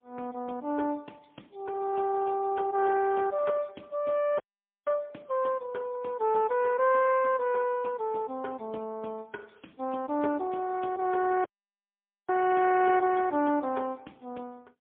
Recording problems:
telephone audio; 220 Hz to 2.8 kHz, AMR-NB, then MP3
audio cutting out; at 4.5 s and at 11 s for 1 s

